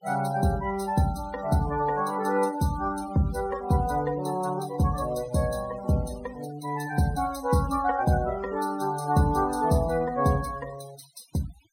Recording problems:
noise reduction artefacts; signal-to-artefact ratio 21 dB

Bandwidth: 16 kHz